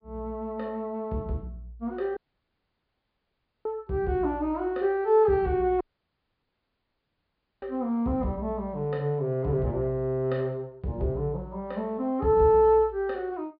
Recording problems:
treble cut off; nothing above 5 kHz
dropout; at 2 s for 1.5 s and at 6 s for 2 s

